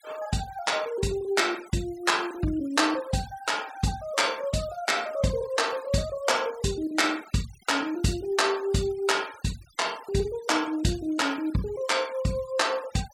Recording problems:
denoising artefacts; signal-to-artefact ratio 20 dB

